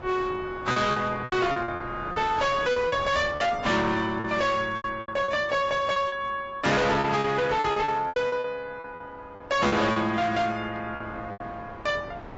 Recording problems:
codec artefacts; AAC, log-spectral distance 3 dB, nothing above 7.6 kHz
distorted audio; hard clipping, signal-to-distortion ratio 7 dB
wind on the microphone; below 1.1 kHz, SNR 17 dB
lost packets; 12% of the sound replaced, filled with repeated pitch periods

